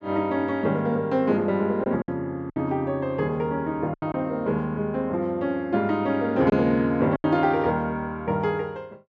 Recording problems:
packet loss; 4% of the sound replaced, filled with silence

